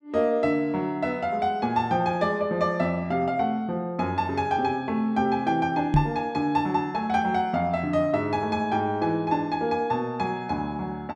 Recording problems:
knock on the microphone; at 6 s; peak +7 dB vs average level

